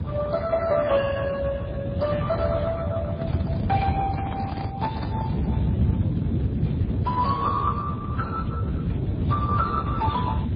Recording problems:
lossy compression; Speex, then MP3, log-spectral distance 3 dB, nothing above 4.6 kHz
rumble; below 210 Hz, SNR 0 dB
microphone handling noise; from 3 to 5.5 s; peak -3 dB vs average level

